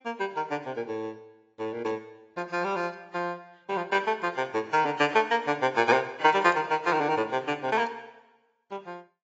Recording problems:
lossy codec; AAC, log-spectral distance 2 dB, nothing above 7.6 kHz

